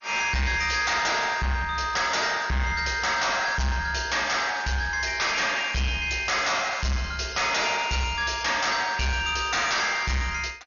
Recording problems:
codec artefacts; MP2, log-spectral distance 7 dB, nothing above 6.7 kHz
distortion; soft clipping, signal-to-distortion ratio 7 dB

